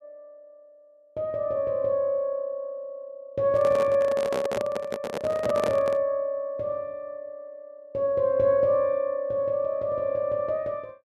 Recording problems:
handling noise; from 3.5 to 6 s; peak 0 dB vs average level

